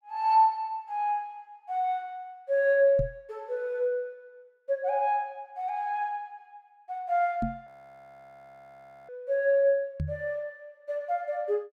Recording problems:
microphone thump; at 3 s, at 7.5 s and at 10 s; peak 0 dB vs average level
audio freezing; at 7.5 s for 1.5 s

